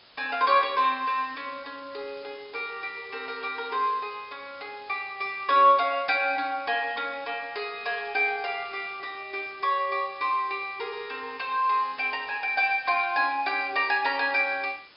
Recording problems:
treble cut off; nothing above 5.5 kHz
hiss; slope 0 dB per octave, SNR 24 dB

